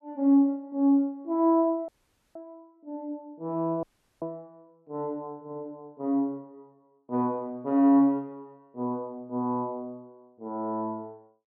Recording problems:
audio cutting out; at 2 s and at 4 s

